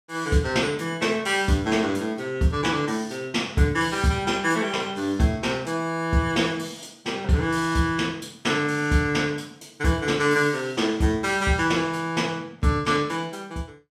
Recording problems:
none

